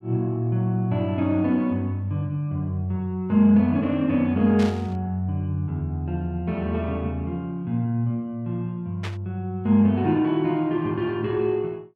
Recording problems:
burst of static; at 4.5 s and at 9 s; peak -7 dB vs average level

